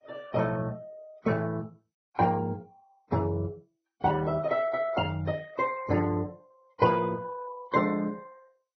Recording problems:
lossy compression; Vorbis, then MP2, log-spectral distance 3 dB, nothing above 5.8 kHz

